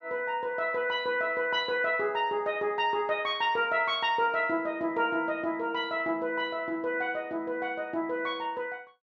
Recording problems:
none

